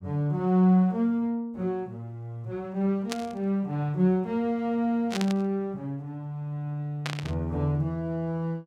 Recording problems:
static burst; at 3 s, at 5 s and at 7 s; peak -1 dB vs average level

